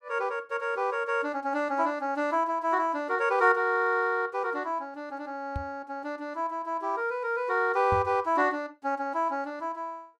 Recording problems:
microphone thump; at 5.5 s and at 8 s; peak -2 dB vs average level

